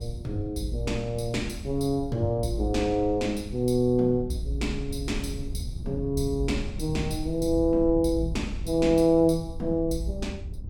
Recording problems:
wind noise; below 92 Hz, SNR 11 dB

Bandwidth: 17 kHz